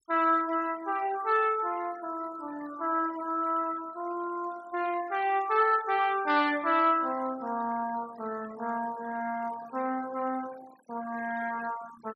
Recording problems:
noise reduction artefacts; signal-to-artefact ratio 19 dB

